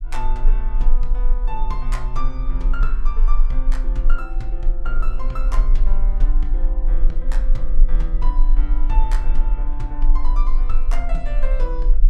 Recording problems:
rumble; below 34 Hz, strongest tone 18 Hz, SNR -11 dB

